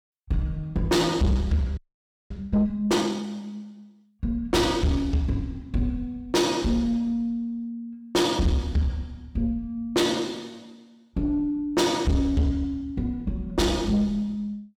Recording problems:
distorted audio; soft clipping, signal-to-distortion ratio 8 dB
frozen audio; at 2 s for 0.5 s

